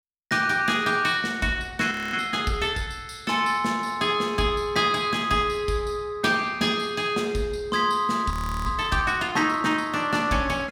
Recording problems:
audio freezing; at 2 s and at 8.5 s

